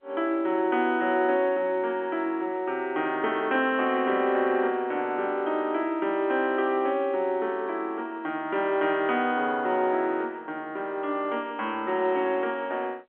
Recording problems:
phone line; 260 Hz to 3.3 kHz, G.711

